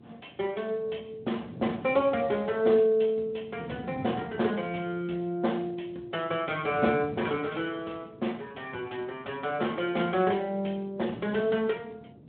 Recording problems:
telephone audio; 170 Hz to 3.6 kHz, Speex
wind noise; below 320 Hz, SNR 16 dB

